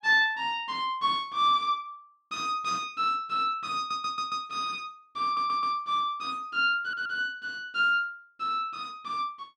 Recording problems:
audio stuttering; at 4 s, at 5 s and at 7 s

